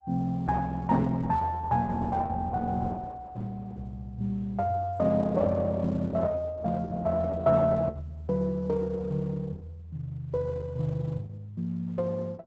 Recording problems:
lossy codec; Opus, log-spectral distance 3 dB, nothing above 8 kHz

